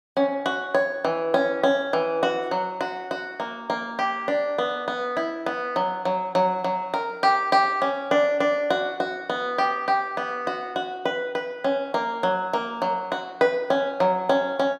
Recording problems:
none

